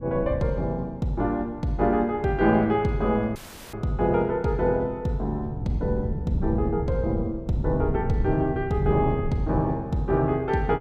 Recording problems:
wind on the microphone; below 160 Hz, SNR 6 dB
audio cutting out; at 3.5 s

